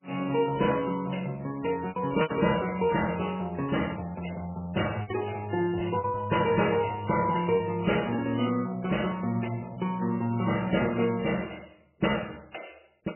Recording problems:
lossy compression; MP3, log-spectral distance 8 dB, nothing above 2.9 kHz
packet loss; 4% of the sound replaced, filled with repeated pitch periods
crackling; from 2 to 3.5 s and at 9.5 s; loose cable, SNR 29 dB

